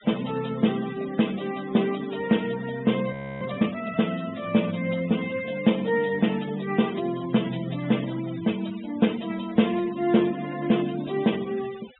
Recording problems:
treble cut off; nothing above 3.8 kHz
denoising artefacts; signal-to-artefact ratio 18 dB
audio freezing; at 3 s

